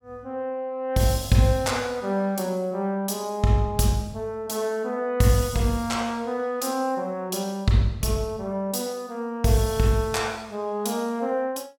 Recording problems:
none

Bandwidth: 17 kHz